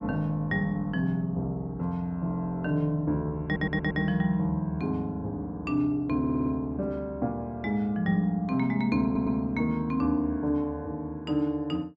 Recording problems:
audio stuttering; at 3.5 s, at 6 s and at 9 s

